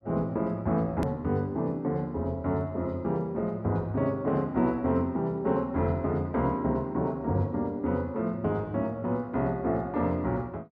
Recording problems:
edit click; at 1 s

